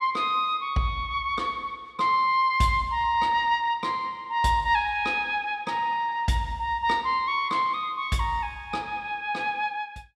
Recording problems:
none

